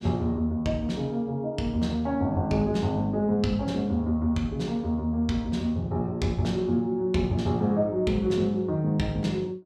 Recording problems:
none

